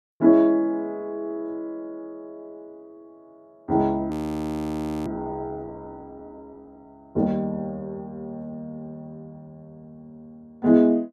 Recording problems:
audio freezing; at 4 s for 1 s

